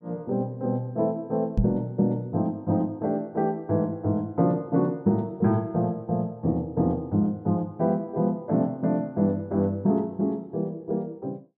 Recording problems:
microphone bump; at 1.5 s; peak +6 dB vs average level

